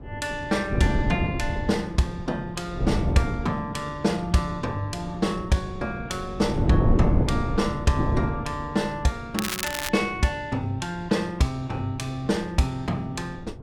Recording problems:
wind on the microphone; below 270 Hz, SNR 2 dB
crackling; at 9.5 s; loose cable, SNR 3 dB

